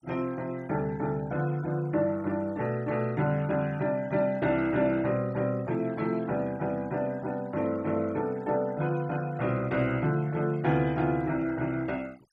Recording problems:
denoising artefacts; signal-to-artefact ratio 24 dB

